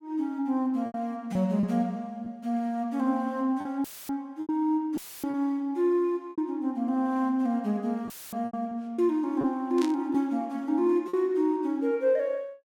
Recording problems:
packet loss; 5% of the sound replaced, filled with repeated pitch periods
audio cutting out; at 4 s, at 5 s and at 8 s; filled with static
burst of static; at 10 s; peak -7 dB vs average level

